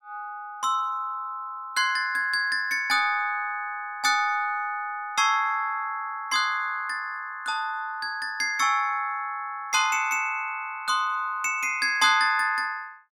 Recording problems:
none

